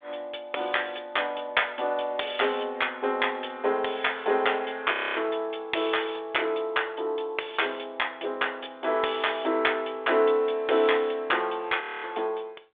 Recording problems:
telephone audio; 340 Hz to 3.6 kHz, G.726
frozen audio; at 5 s and at 12 s

